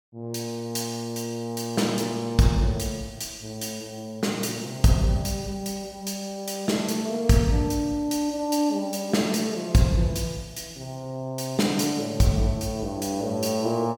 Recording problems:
none

